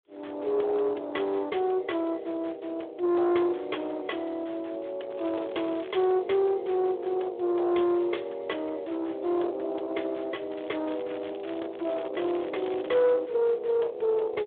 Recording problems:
telephone audio; 320 Hz to 3.6 kHz, Speex
distortion; soft clipping, signal-to-distortion ratio 12 dB
crackling; from 5 to 6 s and from 11 to 13 s; loose cable, SNR 21 dB

